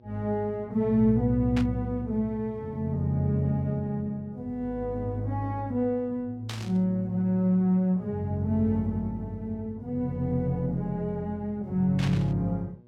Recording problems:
mains hum; 60 Hz, harmonics up to 960 Hz, SNR 28 dB
static burst; at 1.5 s, at 6.5 s and at 12 s; peak -4 dB vs average level

